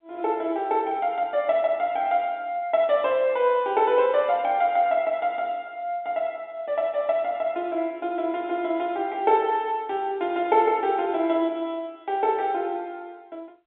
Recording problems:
phone line; 240 Hz to 3.9 kHz, G.711

